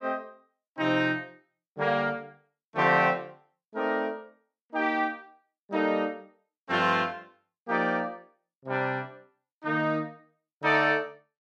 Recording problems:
none

